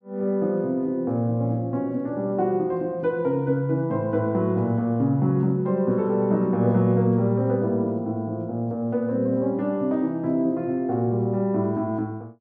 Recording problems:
none

